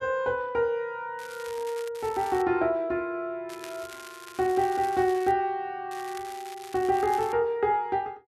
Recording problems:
crackling; 4 times, first at 1 s; loose cable, SNR 18 dB

